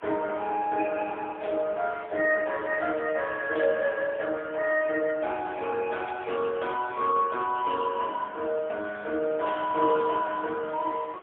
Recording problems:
phone line; 280 Hz to 2.8 kHz, AMR-NB, then MP3
hiss; SNR 25 dB
static burst; 4 times, first at 1.5 s; peak -11 dB vs average level

